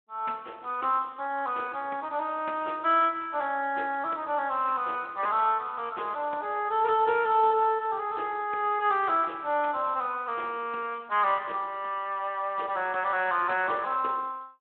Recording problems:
phone line; 280 Hz to 3.5 kHz, Speex

